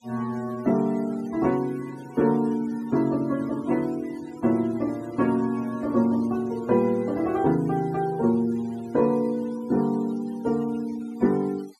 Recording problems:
denoising artefacts; signal-to-artefact ratio 23 dB

